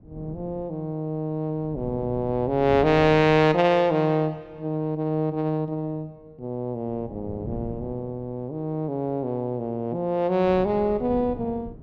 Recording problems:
wind on the microphone; below 240 Hz, SNR 15 dB

